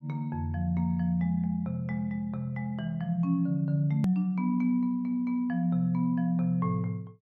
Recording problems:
click at an edit; at 4 s

